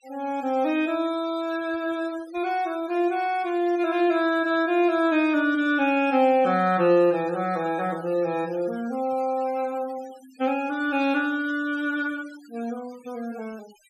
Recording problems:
noise reduction artefacts; signal-to-artefact ratio 23 dB

